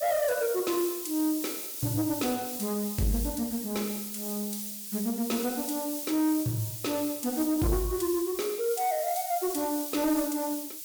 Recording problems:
distorted audio; soft clipping, signal-to-distortion ratio 12 dB
hiss; slope +8 dB per octave, SNR 5 dB

